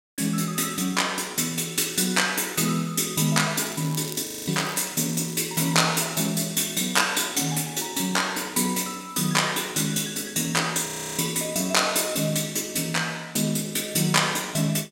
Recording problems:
crackling; from 3.5 to 5.5 s; loose cable, SNR 16 dB
frozen audio; at 4.5 s and at 11 s

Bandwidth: 16 kHz